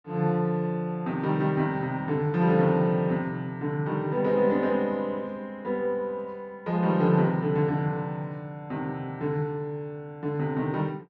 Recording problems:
none

